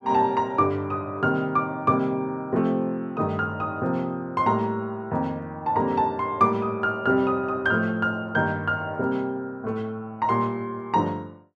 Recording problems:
none

